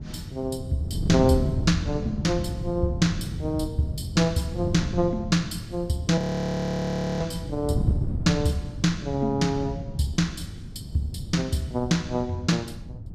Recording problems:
wind on the microphone; below 170 Hz, SNR 6 dB
frozen audio; at 6 s for 1 s

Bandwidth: 15 kHz